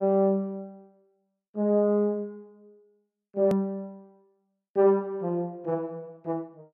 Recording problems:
click at an edit; at 3.5 s

